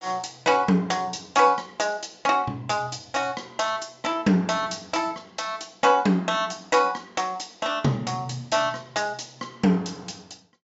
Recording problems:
treble cut off; nothing above 8 kHz

